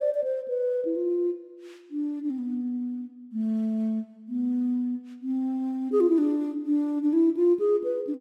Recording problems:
none

